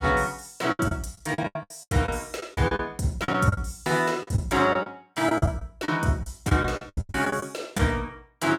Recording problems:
packet loss; 15% of the sound replaced, filled with the last packet

